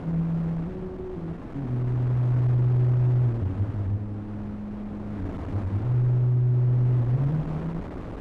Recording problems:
mains hum; 60 Hz, harmonics up to 600 Hz, SNR 37 dB
wind noise; below 470 Hz, SNR 12 dB

